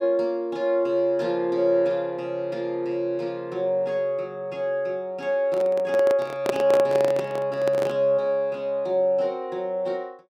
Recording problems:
microphone handling noise; from 5.5 to 8 s; peak +3 dB vs average level

